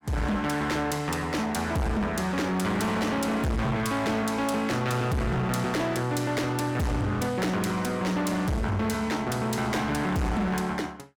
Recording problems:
distorted audio; hard clipping, uneven, signal-to-distortion ratio 6 dB

